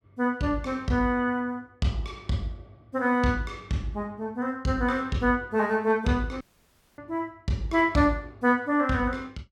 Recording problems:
dropout; at 6.5 s for 0.5 s

